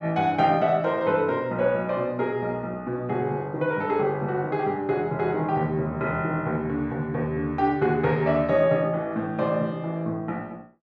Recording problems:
none

